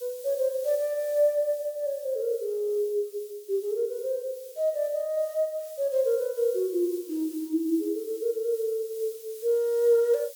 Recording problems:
hiss; SNR 19 dB

